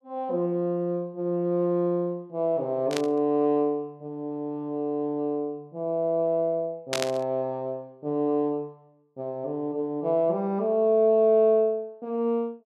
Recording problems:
burst of static; at 3 s and at 7 s; peak +1 dB vs average level

